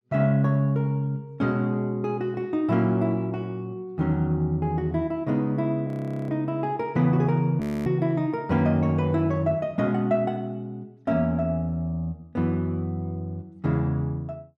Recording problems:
frozen audio; at 6 s and at 7.5 s

